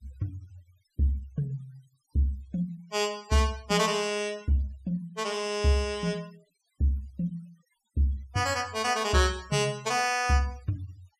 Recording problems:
noise reduction artefacts; signal-to-artefact ratio 24 dB

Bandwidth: 14.5 kHz